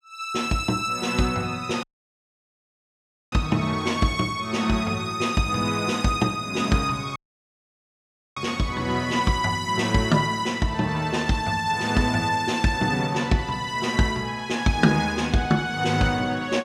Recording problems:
dropout; at 2 s for 1.5 s and at 7 s for 1 s

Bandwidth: 15.5 kHz